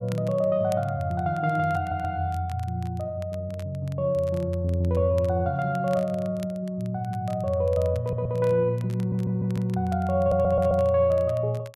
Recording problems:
crackling; vinyl, SNR 26 dB
audio stuttering; 4 times, first at 2 s

